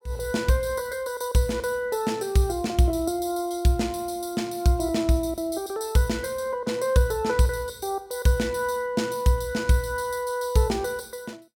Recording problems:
none

